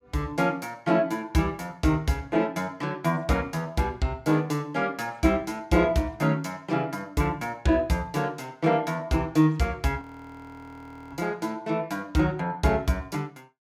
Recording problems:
audio freezing; at 10 s for 1 s

